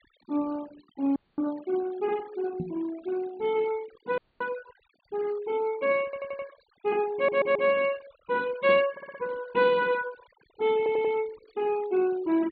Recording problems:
low-pass filter; nothing above 4.6 kHz
denoising artefacts; signal-to-artefact ratio 22 dB
audio cutting out; at 1 s and at 4 s
microphone bump; at 2.5 s; peak -2 dB vs average level
audio stuttering; 4 times, first at 6 s

